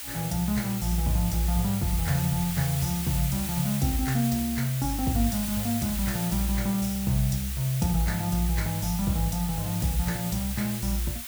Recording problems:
hiss; SNR 6 dB

